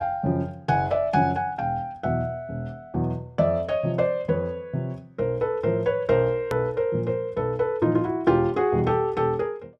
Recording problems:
click at an edit; at 6.5 s

